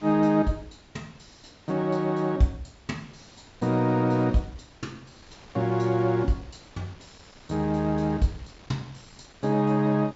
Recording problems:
low-pass filter; nothing above 8 kHz
wind on the microphone; below 2.9 kHz, SNR 25 dB

